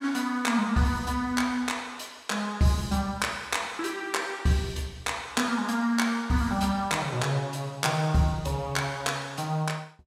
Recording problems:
none

